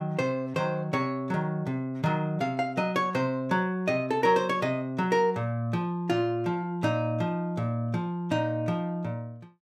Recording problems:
none

